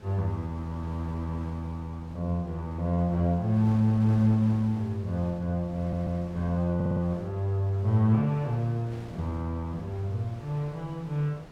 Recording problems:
wind on the microphone; below 710 Hz, SNR 19 dB
stutter; at 6 s and at 7 s

